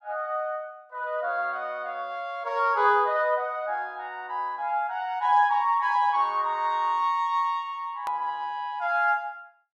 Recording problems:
click at an edit; at 8 s

